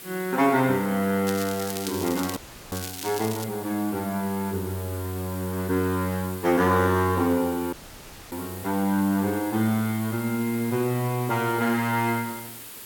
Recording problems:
background hiss; SNR 14 dB
crackle; from 1.5 to 3.5 s; loose cable, SNR 11 dB
audio cutting out; at 2.5 s and at 7.5 s for 0.5 s

